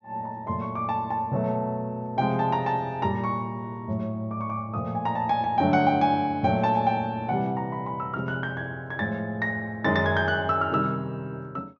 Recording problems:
treble cut off; nothing above 6.7 kHz

